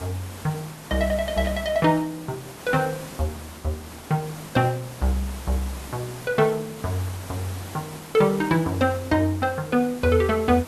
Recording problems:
hiss; slope -4 dB per octave, SNR 14 dB
static burst; at 1.5 s; peak -11 dB vs average level

